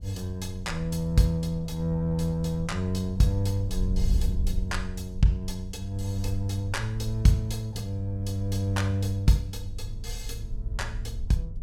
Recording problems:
wind on the microphone; below 66 Hz, SNR 8 dB

